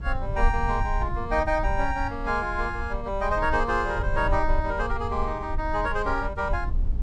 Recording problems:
rumble; below 58 Hz, SNR 5 dB

